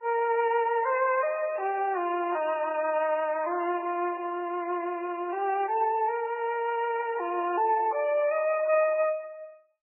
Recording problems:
lossy codec; MP3, then Vorbis, log-spectral distance 3 dB, nothing above 2.5 kHz

